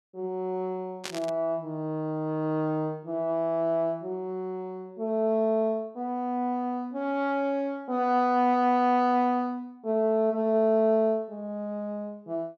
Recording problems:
burst of static; at 1 s; peak -3 dB vs average level

